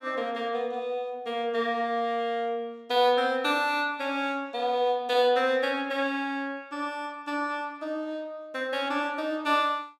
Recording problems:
none

